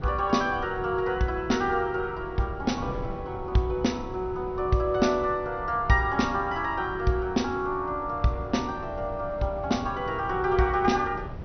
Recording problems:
low-pass filter; nothing above 6 kHz
wind on the microphone; below 290 Hz, SNR 13 dB

